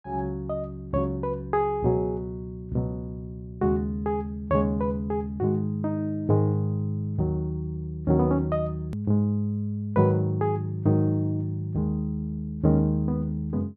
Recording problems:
hard cut with a click; at 9 s

